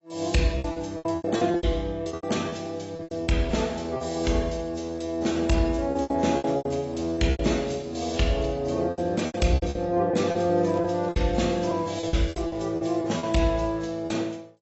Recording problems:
lossy compression; AAC, log-spectral distance 4 dB, nothing above 7.8 kHz
packet loss; 15% of the sound replaced, filled with repeated pitch periods
crackling; from 11 to 13 s; loose cable, SNR 26 dB

